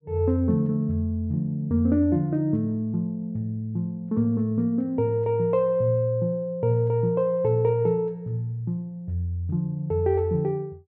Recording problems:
none

